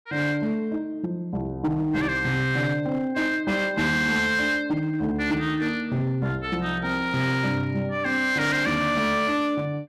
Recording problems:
distortion; hard clipping, uneven, signal-to-distortion ratio 12 dB

